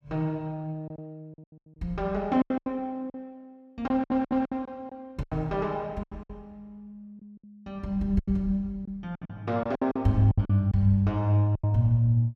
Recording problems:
packet loss; 11% of the sound replaced, filled with silence
audio stuttering; at 4 s

